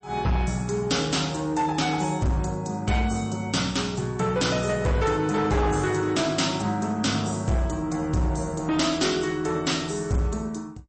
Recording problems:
lossy compression; MP3, log-spectral distance 4 dB, nothing above 8.2 kHz
distorted audio; hard clipping, signal-to-distortion ratio 10 dB

